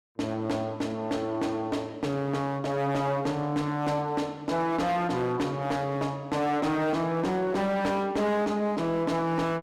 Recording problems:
distortion; hard clipping, signal-to-distortion ratio 10 dB

